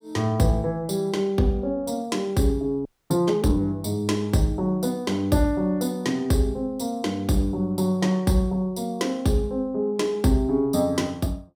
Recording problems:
audio freezing; at 3 s

